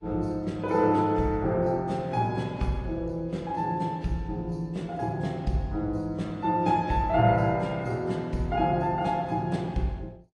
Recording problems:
lossy compression; AAC, log-spectral distance 2 dB, nothing above 11 kHz

